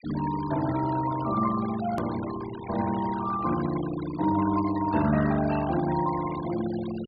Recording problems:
treble cut off; nothing above 4.9 kHz
denoising artefacts; signal-to-artefact ratio 13 dB
hard cut with a click; at 2 s

